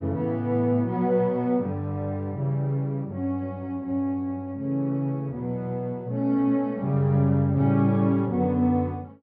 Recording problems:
low-pass filter; nothing above 5.2 kHz

